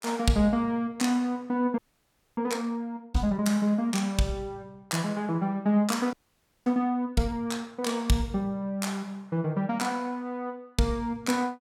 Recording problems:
frozen audio; at 2 s for 0.5 s and at 6 s for 0.5 s

